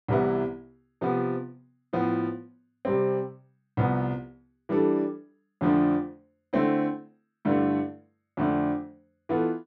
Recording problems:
none

